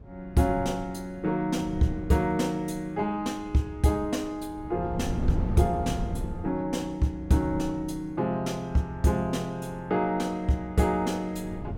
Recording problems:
wind on the microphone; below 200 Hz, SNR 9 dB

